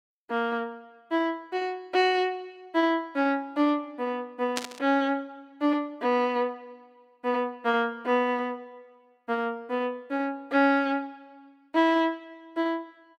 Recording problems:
burst of static; at 4.5 s; peak +1 dB vs average level

